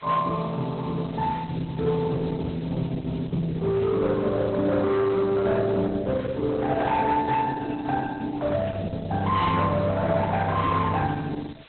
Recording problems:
lossy codec; AAC, then Opus, log-spectral distance 7 dB, nothing above 4 kHz
distortion; hard clipping, uneven, signal-to-distortion ratio 12 dB
hiss; SNR 25 dB

